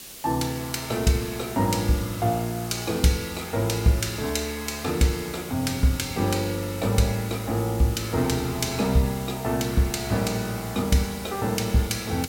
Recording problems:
hiss; SNR 14 dB

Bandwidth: 16.5 kHz